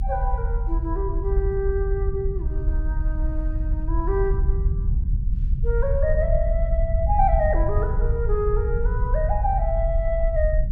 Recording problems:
rumble; below 62 Hz, SNR -2 dB

